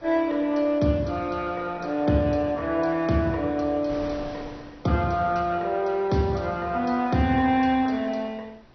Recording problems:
lossy compression; MP2, log-spectral distance 3 dB, nothing above 6 kHz
wind on the microphone; below 1 kHz, SNR 23 dB

